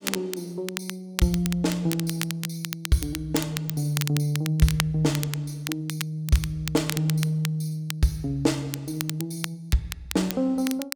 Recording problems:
crackle; vinyl, SNR 8 dB

